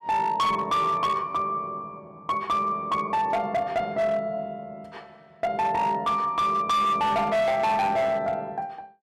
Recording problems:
distorted audio; hard clipping, signal-to-distortion ratio 10 dB

